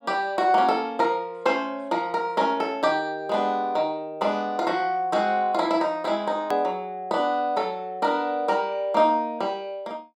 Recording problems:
edit click; at 6.5 s

